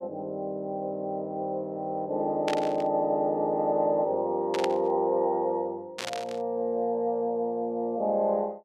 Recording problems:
static burst; at 2.5 s, at 4.5 s and at 6 s; peak -1 dB vs average level

